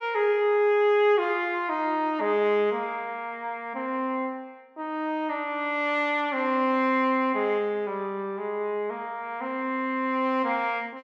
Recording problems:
none

